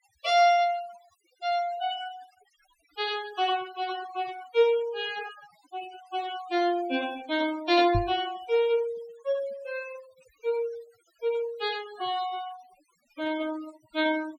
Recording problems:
denoising artefacts; signal-to-artefact ratio 17 dB
knock on the microphone; at 8 s; peak +3 dB vs average level

